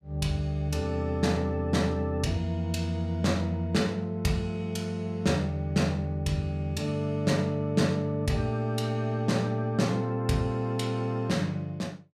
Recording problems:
none

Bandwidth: 15 kHz